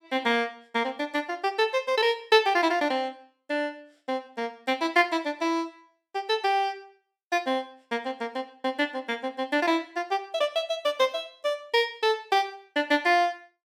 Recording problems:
none

